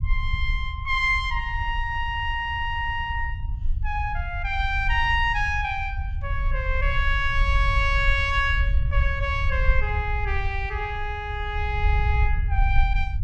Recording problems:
rumble; below 68 Hz, SNR 2 dB

